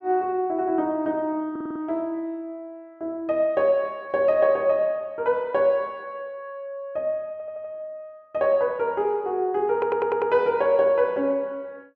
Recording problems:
stutter; at 1.5 s, at 7.5 s and at 9.5 s

